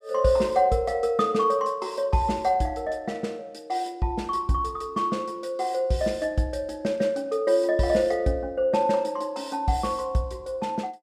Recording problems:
none

